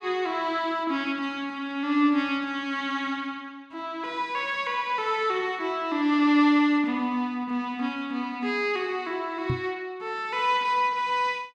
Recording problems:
knock on the microphone; at 9.5 s; peak +2 dB vs average level

